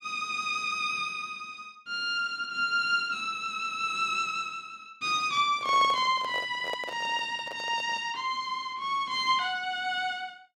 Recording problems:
handling noise; from 5.5 to 8 s; peak -3 dB vs average level

